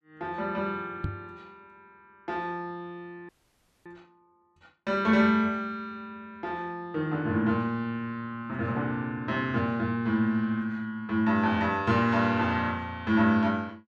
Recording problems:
microphone bump; at 1 s; peak 0 dB vs average level
audio freezing; at 3.5 s for 0.5 s

